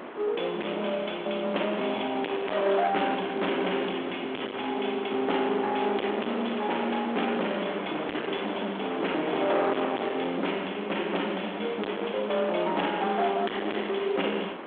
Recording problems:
telephone audio; 240 Hz to 3.5 kHz, G.726
distortion; hard clipping, signal-to-distortion ratio 6 dB
wind noise; below 1.4 kHz, SNR 10 dB

